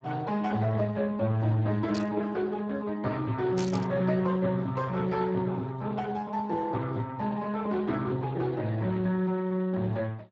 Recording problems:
codec artefacts; Speex, log-spectral distance 3 dB
static burst; at 2 s and at 3.5 s; peak -6 dB vs average level

